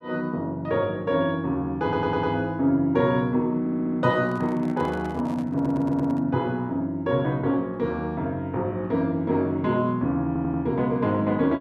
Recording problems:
stutter; 4 times, first at 2 s
handling noise; from 4 to 6.5 s; peak -11 dB vs average level

